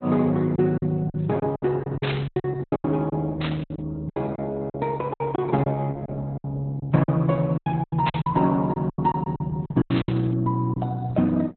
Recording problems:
lossy compression; Opus, log-spectral distance 3 dB, nothing above 4 kHz
lost packets; 14% of the sound replaced, filled with silence
static burst; 4 times, first at 2 s; peak 0 dB vs average level

